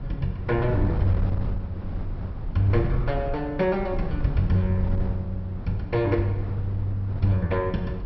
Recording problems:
low-pass filter; nothing above 5.6 kHz
wind noise; below 120 Hz, SNR 6 dB

